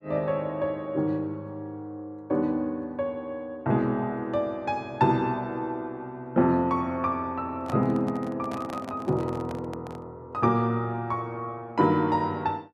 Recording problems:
handling noise; from 7.5 to 10 s; peak -5 dB vs average level

